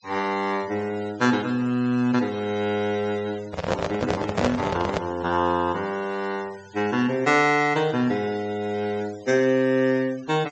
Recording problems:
treble missing; nothing above 8 kHz
denoising artefacts; signal-to-artefact ratio 21 dB
handling noise; from 3.5 to 5 s; peak +5 dB vs average level

